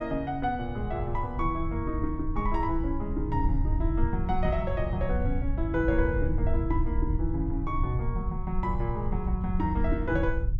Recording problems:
low-frequency rumble; below 82 Hz, SNR 1 dB

